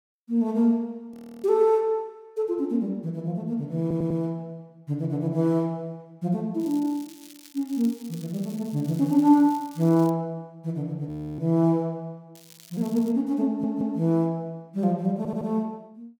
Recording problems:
audio freezing; at 1 s and at 11 s
stutter; at 4 s, at 13 s and at 15 s
crackle; from 6.5 to 10 s and at 12 s; loose cable, SNR 23 dB

